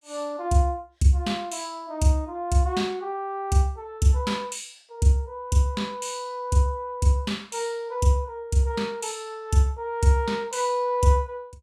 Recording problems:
none

